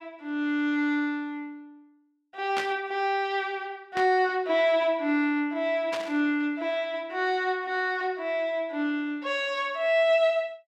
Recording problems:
burst of static; at 2.5 s, at 4 s and at 6 s; peak -2 dB vs average level

